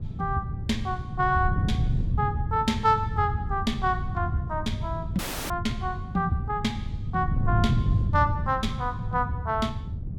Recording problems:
wind noise; below 140 Hz, SNR 2 dB
dropout; at 5 s

